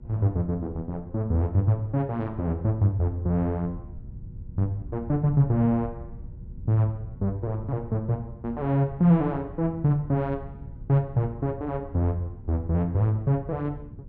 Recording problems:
electrical hum; 60 Hz, harmonics up to 1.1 kHz, SNR 32 dB
low-frequency rumble; below 120 Hz, SNR 16 dB

